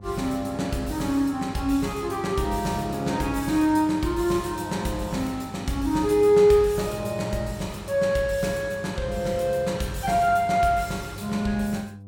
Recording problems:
hum; 50 Hz, harmonics up to 700 Hz, SNR 19 dB

